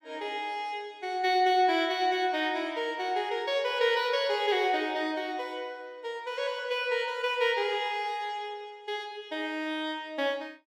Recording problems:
none

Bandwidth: 17 kHz